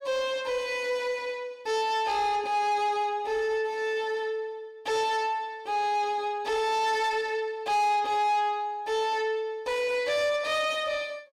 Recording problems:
distorted audio; soft clipping, signal-to-distortion ratio 11 dB

